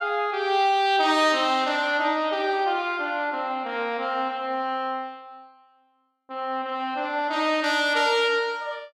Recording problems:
none

